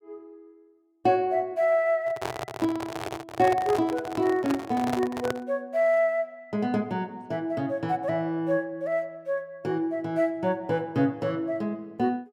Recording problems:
handling noise; from 2 to 5.5 s; peak 0 dB vs average level

